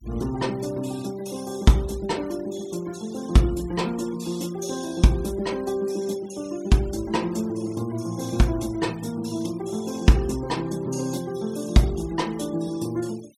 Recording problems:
denoising artefacts; signal-to-artefact ratio 21 dB

